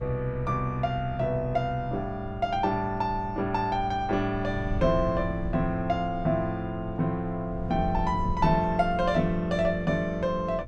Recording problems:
wind noise; below 94 Hz, SNR 12 dB

